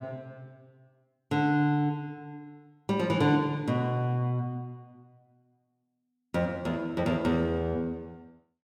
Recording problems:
none

